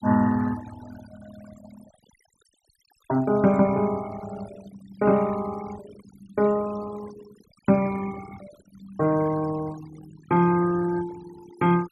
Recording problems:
denoising artefacts; signal-to-artefact ratio 18 dB

